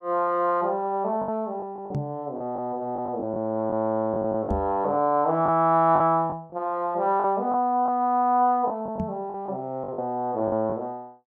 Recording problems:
lost packets; 7% of the sound replaced, filled with the last packet
microphone bump; at 2 s, at 4.5 s and at 9 s; peak 0 dB vs average level

